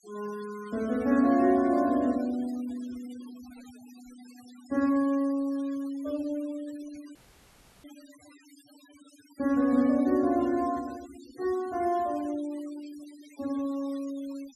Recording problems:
noise reduction artefacts; signal-to-artefact ratio 22 dB
audio cutting out; at 7 s for 0.5 s

